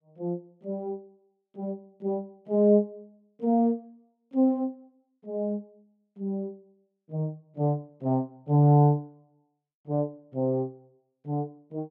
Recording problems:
none

